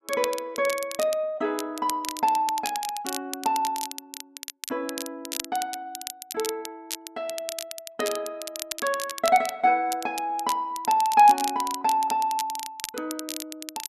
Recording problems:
crackling; vinyl, SNR 10 dB

